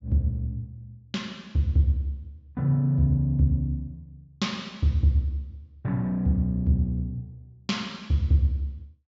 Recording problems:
treble cut off; nothing above 7.4 kHz

